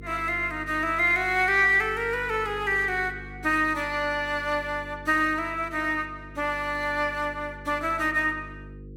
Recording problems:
electrical hum; 50 Hz, harmonics up to 500 Hz, SNR 19 dB

